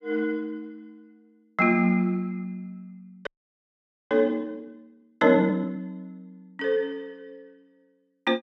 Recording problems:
audio freezing; at 3.5 s for 1 s

